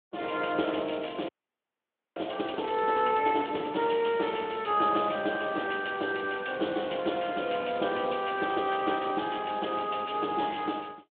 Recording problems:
phone line; 260 Hz to 3.5 kHz, Speex
frozen audio; at 1.5 s for 1 s

